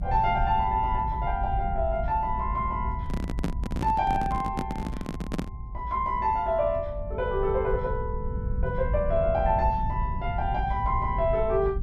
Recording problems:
rumble; below 96 Hz, SNR 6 dB
microphone handling noise; from 3 to 5.5 s; peak +2 dB vs average level

